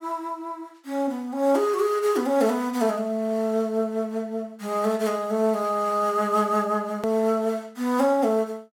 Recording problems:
click at an edit; at 7 s

